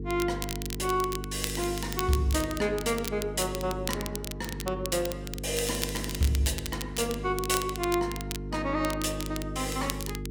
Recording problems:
mains hum; 50 Hz, harmonics up to 450 Hz, SNR 7 dB
crackle; vinyl, SNR 8 dB

